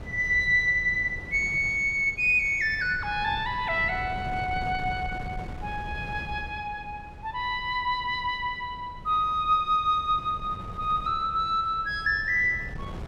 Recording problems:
wind on the microphone; below 220 Hz, SNR 16 dB

